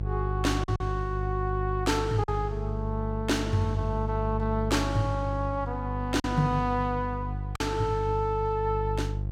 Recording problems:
hum; 50 Hz, harmonics up to 500 Hz, SNR 3 dB
packet loss; 2% of the sound replaced, filled with silence

